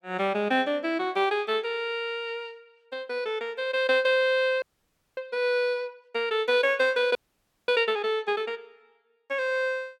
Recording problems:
audio freezing; at 4.5 s for 0.5 s and at 7 s for 0.5 s

